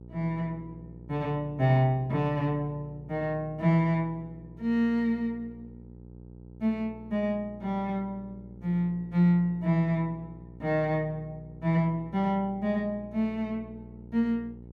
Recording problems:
electrical hum; 60 Hz, harmonics up to 540 Hz, SNR 18 dB

